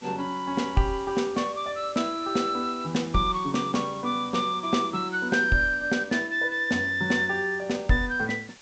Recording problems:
treble cut off; nothing above 8 kHz
hiss; SNR 22 dB

